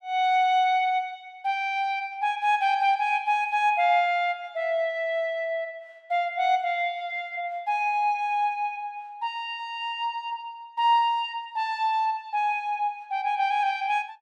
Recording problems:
none

